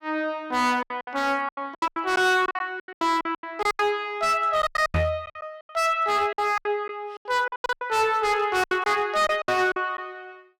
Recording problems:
distorted audio; hard clipping, signal-to-distortion ratio 7 dB
lost packets; 17% of the sound replaced, filled with silence
microphone thump; at 5 s; peak +4 dB vs average level

